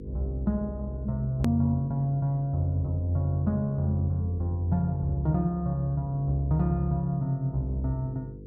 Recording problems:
hum; 50 Hz, harmonics up to 500 Hz, SNR 16 dB
hard cut with a click; at 1.5 s

